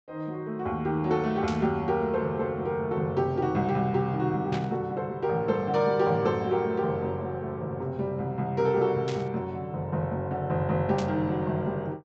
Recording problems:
low-pass filter; nothing above 8 kHz
static burst; 4 times, first at 1.5 s; peak -6 dB vs average level

